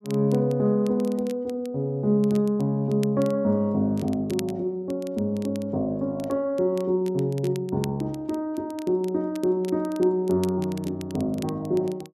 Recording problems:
crackle; vinyl, SNR 22 dB

